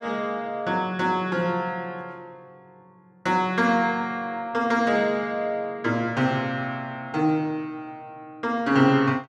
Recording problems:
none

